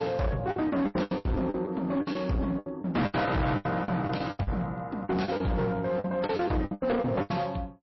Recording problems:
codec artefacts; MP3, log-spectral distance 2 dB, nothing above 5.7 kHz
distortion; hard clipping, uneven, signal-to-distortion ratio 7 dB
lost packets; 17% of the sound replaced, filled with the last packet

